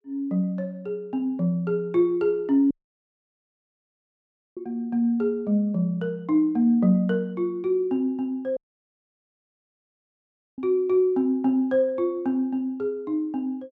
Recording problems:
audio cutting out; at 2.5 s for 2 s and at 8.5 s for 2 s

